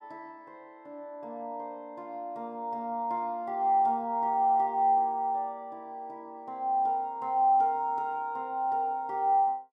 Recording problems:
none

